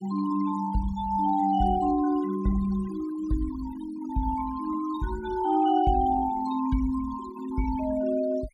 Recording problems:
denoising artefacts; signal-to-artefact ratio 17 dB

